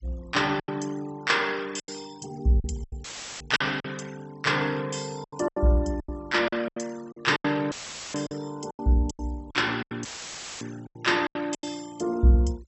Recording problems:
treble missing; nothing above 7.9 kHz
noise reduction artefacts; signal-to-artefact ratio 24 dB
packet loss; 12% of the sound replaced, filled with silence
audio cutting out; at 3 s, at 7.5 s and at 10 s for 0.5 s; filled with static

